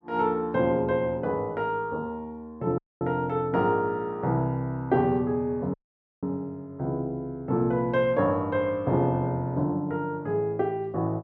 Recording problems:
dropout; at 3 s and at 5.5 s

